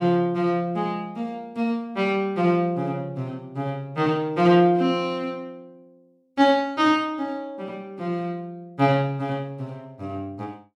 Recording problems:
none

